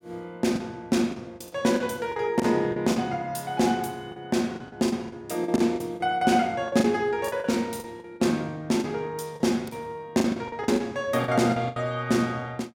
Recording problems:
lost packets; 12% of the sound replaced, filled with the last packet

